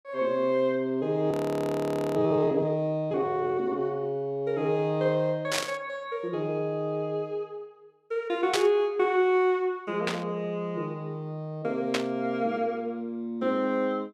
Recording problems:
frozen audio; at 1.5 s for 1 s
static burst; 4 times, first at 5.5 s; peak +4 dB vs average level

